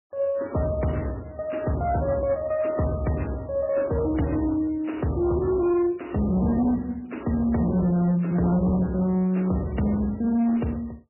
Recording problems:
lossy compression; MP3, log-spectral distance 4 dB, nothing above 2.9 kHz
distortion; hard clipping, uneven, signal-to-distortion ratio 12 dB

